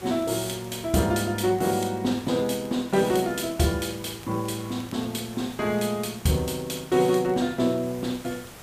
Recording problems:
background hiss; slope -3 dB per octave, SNR 19 dB
crackling; vinyl, SNR 29 dB

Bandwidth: 15 kHz